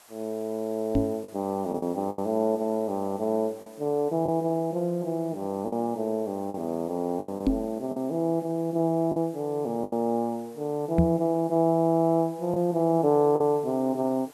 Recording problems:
background hiss; SNR 26 dB
packet loss; 5% of the sound replaced, filled with the last packet
knock on the microphone; at 1 s, at 7.5 s and at 11 s; peak +8 dB vs average level

